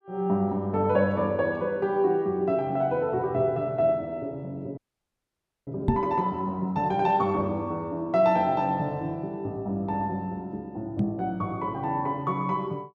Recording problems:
frozen audio; at 5 s for 1 s
knock on the microphone; at 6 s and at 11 s; peak +7 dB vs average level

